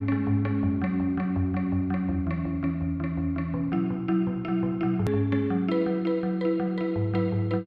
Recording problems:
click at an edit; at 5 s

